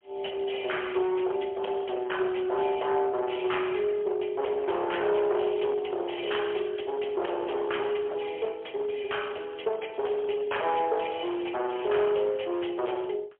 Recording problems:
phone line; 340 Hz to 3.3 kHz, AMR-NB, then MP3
distorted audio; hard clipping, uneven, signal-to-distortion ratio 9 dB

